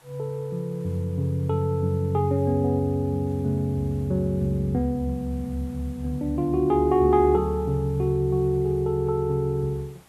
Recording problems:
background hiss; SNR 29 dB

